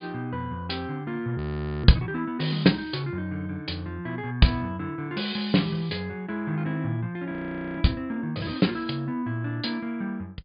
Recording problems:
treble cut off; nothing above 5 kHz
frozen audio; at 1.5 s and at 7.5 s

